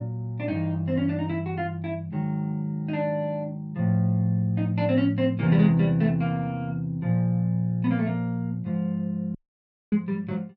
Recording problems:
dropout; at 9.5 s for 0.5 s

